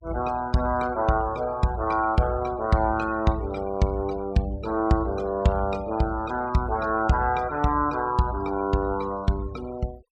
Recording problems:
noise reduction artefacts; signal-to-artefact ratio 24 dB

